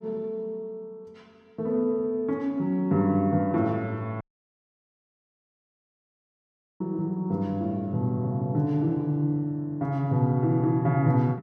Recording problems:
audio cutting out; at 4 s for 2.5 s

